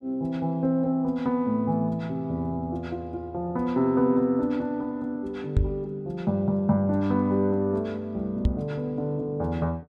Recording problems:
knock on the microphone; at 5.5 s and at 8.5 s; peak +7 dB vs average level

